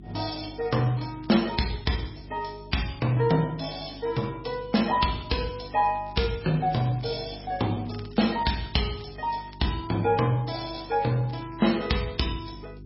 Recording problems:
lossy compression; MP3, log-spectral distance 7 dB, nothing above 5.3 kHz
hum; 50 Hz, harmonics up to 400 Hz, SNR 18 dB
crackle; from 0.5 to 1.5 s, from 5.5 to 9.5 s and at 11 s; loose cable, SNR 26 dB

